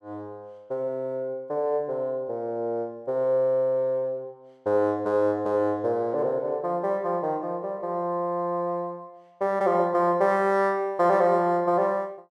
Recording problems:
none

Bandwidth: 13.5 kHz